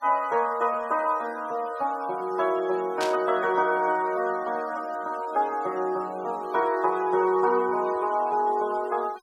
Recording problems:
denoising artefacts; signal-to-artefact ratio 22 dB
burst of static; at 3 s; peak -3 dB vs average level

